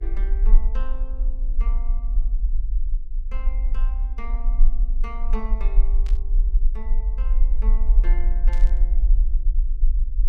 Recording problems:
hum; 50 Hz, harmonics up to 500 Hz, SNR 22 dB
low-frequency rumble; below 40 Hz, SNR -17 dB
static burst; at 6 s and at 8.5 s; peak -1 dB vs average level

